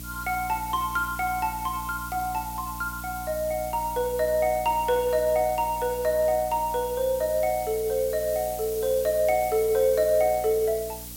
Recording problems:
hum; 60 Hz, harmonics up to 300 Hz, SNR 17 dB
background hiss; SNR 13 dB

